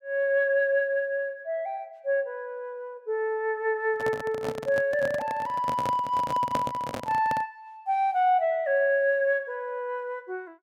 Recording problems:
microphone handling noise; from 4 to 7.5 s; peak 0 dB vs average level

